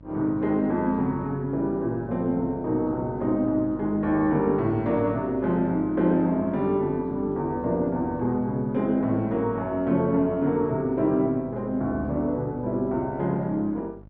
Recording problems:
hum; 50 Hz, harmonics up to 650 Hz, SNR 21 dB

